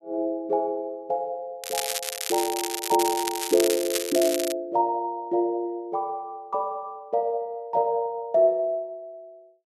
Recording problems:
crackle; from 1.5 to 4.5 s; loose cable, SNR 3 dB

